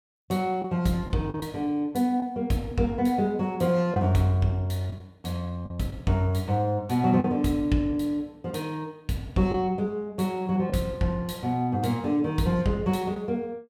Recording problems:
lost packets; 3% of the sound replaced, filled with the last packet

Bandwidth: 17 kHz